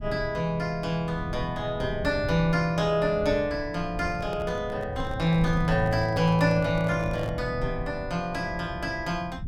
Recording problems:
rumble; below 140 Hz, SNR 11 dB
handling noise; from 4 to 7.5 s; peak -8 dB vs average level

